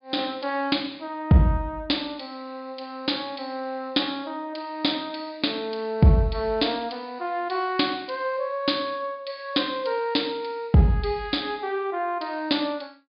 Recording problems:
treble cut off; nothing above 5 kHz

